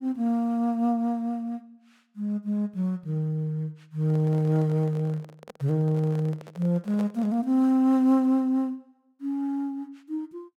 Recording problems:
handling noise; from 4 to 7.5 s; peak -9 dB vs average level

